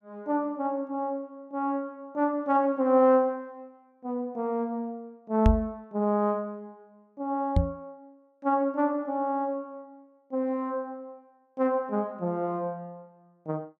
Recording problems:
microphone bump; at 5.5 s and at 7.5 s; peak +9 dB vs average level

